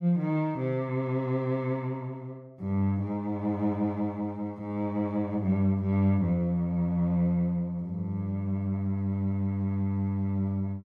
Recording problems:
none

